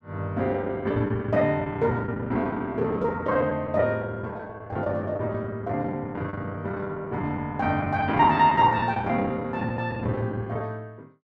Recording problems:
lost packets; 17% of the sound replaced, filled with the last packet

